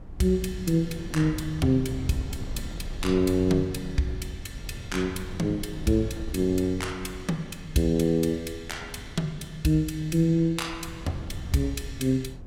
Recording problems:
wind on the microphone; below 140 Hz, SNR 13 dB

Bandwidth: 16.5 kHz